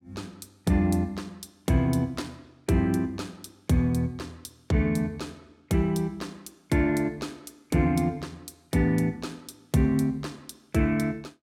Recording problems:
none

